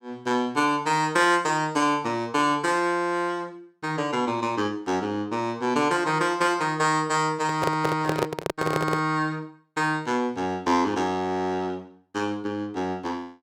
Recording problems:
microphone handling noise; from 7.5 to 9 s; peak +4 dB vs average level

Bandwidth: 17 kHz